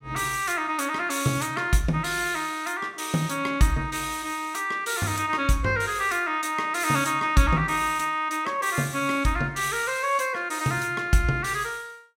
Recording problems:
none

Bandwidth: 16 kHz